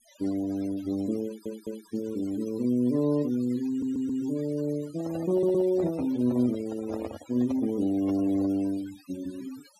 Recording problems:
noise reduction artefacts; signal-to-artefact ratio 19 dB
audio stuttering; at 1.5 s, at 3.5 s and at 5.5 s
handling noise; from 5 to 8.5 s; peak -5 dB vs average level

